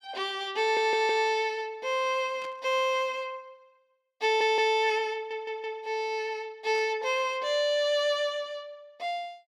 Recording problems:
audio stuttering; at 0.5 s, at 4 s and at 5 s
static burst; at 2.5 s, at 5 s and at 7 s; peak -15 dB vs average level

